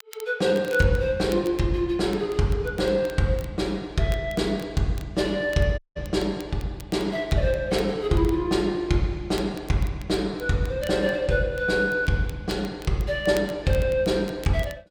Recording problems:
crackle; vinyl, SNR 23 dB
audio cutting out; at 6 s

